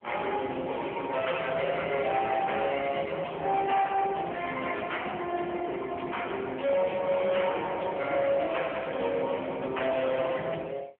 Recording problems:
telephone audio; 280 Hz to 3.2 kHz, AMR-NB
distortion; hard clipping, uneven, signal-to-distortion ratio 12 dB

